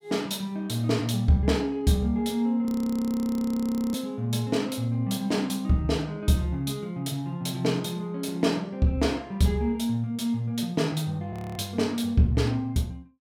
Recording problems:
frozen audio; at 2.5 s for 1.5 s and at 11 s

